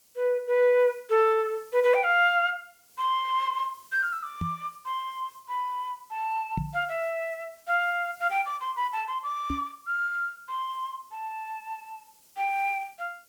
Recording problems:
background hiss; SNR 28 dB
knock on the microphone; at 4.5 s, at 6.5 s and at 9.5 s; peak +1 dB vs average level

